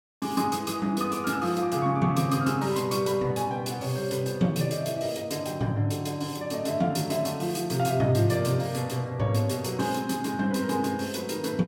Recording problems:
none

